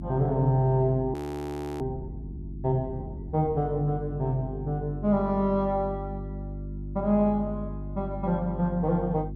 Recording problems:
hum; 50 Hz, harmonics up to 350 Hz, SNR 10 dB
frozen audio; at 1 s for 0.5 s

